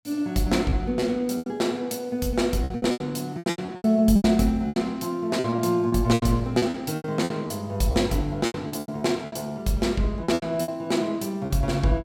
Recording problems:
lost packets; 14% of the sound replaced, filled with repeated pitch periods

